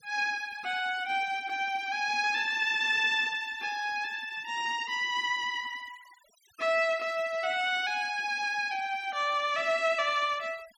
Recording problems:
denoising artefacts; signal-to-artefact ratio 23 dB

